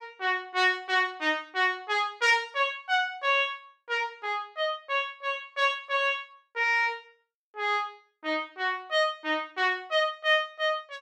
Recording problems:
none

